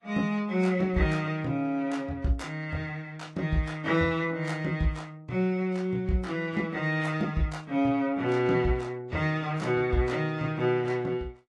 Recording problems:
lossy codec; AAC, then Vorbis, log-spectral distance 2 dB

